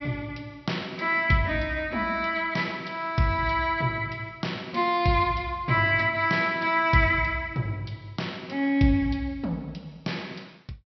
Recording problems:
treble missing; nothing above 5.7 kHz

